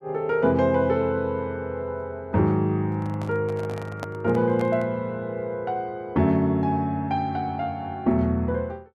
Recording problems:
handling noise; from 3 to 5 s; peak -4 dB vs average level

